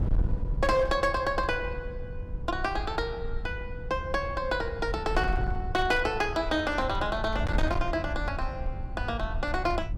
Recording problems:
distortion; hard clipping, signal-to-distortion ratio 12 dB
wind on the microphone; below 86 Hz, SNR 6 dB

